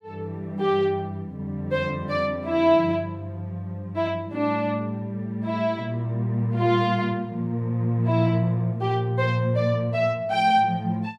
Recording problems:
none

